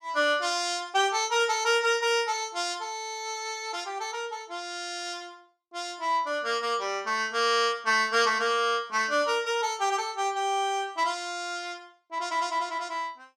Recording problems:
none

